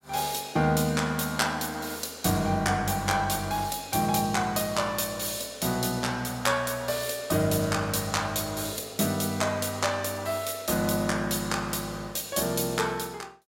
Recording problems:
none

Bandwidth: 16 kHz